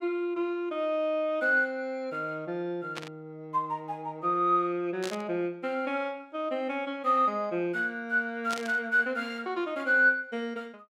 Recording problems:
static burst; at 3 s, at 5 s and at 8.5 s; peak -3 dB vs average level

